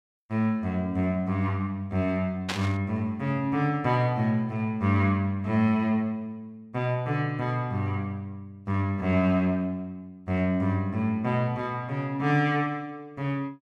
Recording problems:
burst of static; at 2.5 s; peak +1 dB vs average level

